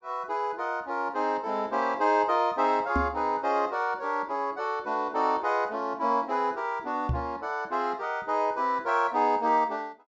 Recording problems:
treble cut off; nothing above 8 kHz
microphone bump; at 3 s and at 7 s; peak +2 dB vs average level

